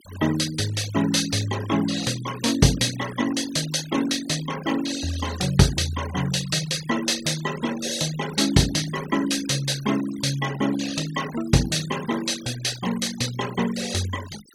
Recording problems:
denoising artefacts; signal-to-artefact ratio 13 dB

